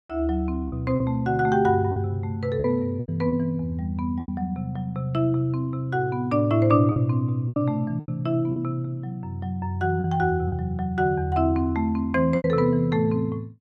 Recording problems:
lost packets; 6% of the sound replaced, filled with repeated pitch periods

